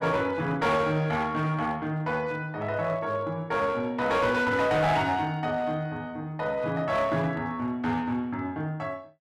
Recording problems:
distorted audio; hard clipping, uneven, signal-to-distortion ratio 11 dB

